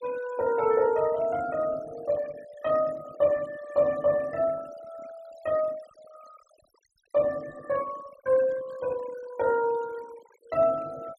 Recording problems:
noise reduction artefacts; signal-to-artefact ratio 21 dB

